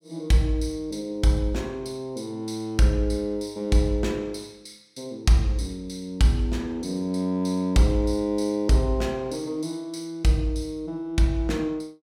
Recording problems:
none

